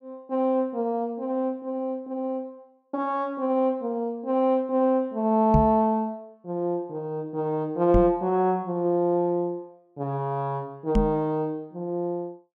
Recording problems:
microphone thump; at 5.5 s, at 8 s and at 11 s; peak +7 dB vs average level

